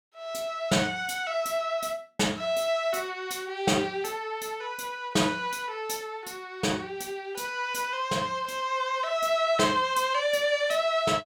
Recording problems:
none

